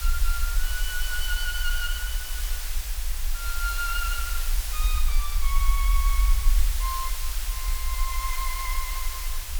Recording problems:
background hiss; slope +2 dB per octave, SNR -1 dB
rumble; below 46 Hz, SNR -4 dB

